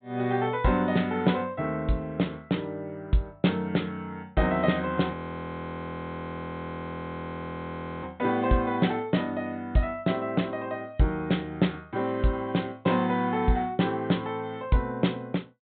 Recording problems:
treble missing; nothing above 4 kHz
frozen audio; at 5 s for 3 s

